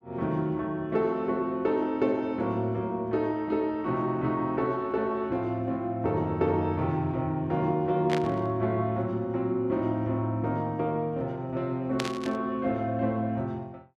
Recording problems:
burst of static; at 8 s and at 12 s; peak +1 dB vs average level

